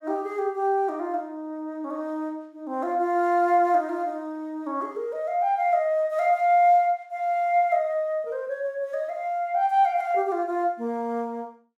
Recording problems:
none

